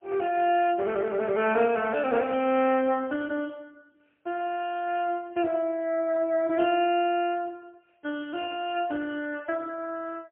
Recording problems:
telephone audio; 280 Hz to 3.2 kHz, AMR-NB, then MP3

